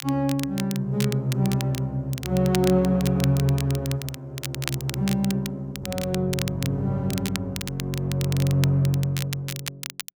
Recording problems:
crackling; vinyl, SNR 10 dB

